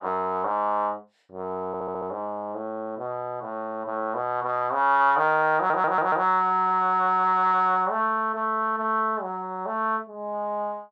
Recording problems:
audio stuttering; at 1.5 s and at 5.5 s

